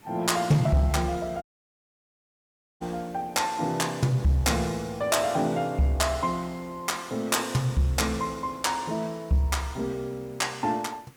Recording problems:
distorted audio; soft clipping, signal-to-distortion ratio 12 dB
background hiss; SNR 28 dB
dropout; at 1.5 s for 1.5 s

